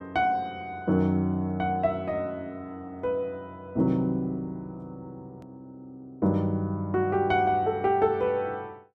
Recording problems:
hard cut with a click; at 5.5 s

